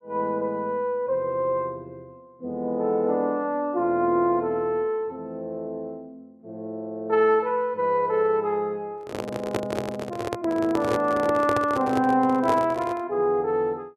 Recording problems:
handling noise; from 9 to 13 s; peak +2 dB vs average level

